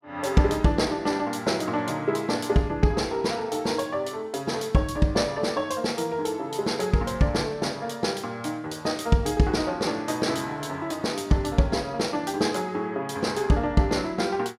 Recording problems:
none

